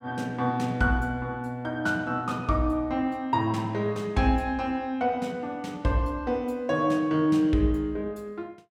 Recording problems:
none

